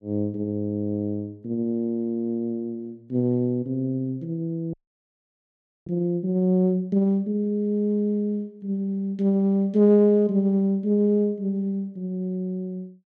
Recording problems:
audio freezing; at 4.5 s for 1 s

